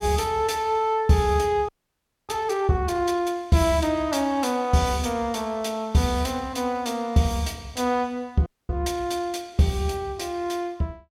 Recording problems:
audio freezing; at 1.5 s for 0.5 s and at 8.5 s

